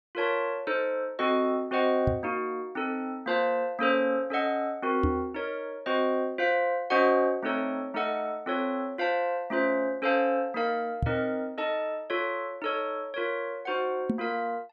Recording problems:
microphone bump; 4 times, first at 2 s; peak +4 dB vs average level

